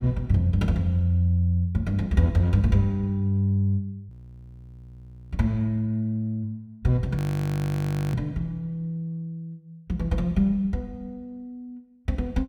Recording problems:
frozen audio; at 4 s for 1 s and at 7 s for 1 s

